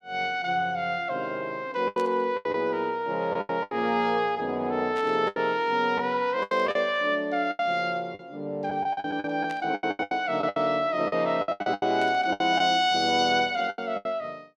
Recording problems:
packet loss; 12% of the sound replaced, filled with the last packet
burst of static; 5 times, first at 2 s; peak -12 dB vs average level

